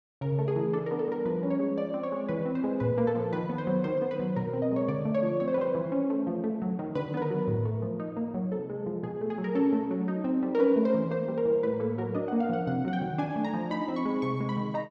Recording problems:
none

